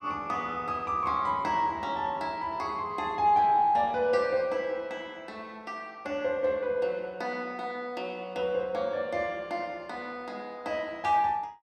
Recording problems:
none

